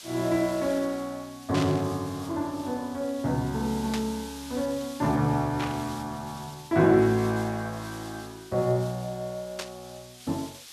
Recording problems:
hiss; slope +3 dB per octave, SNR 17 dB
static burst; 4 times, first at 1.5 s; peak -2 dB vs average level

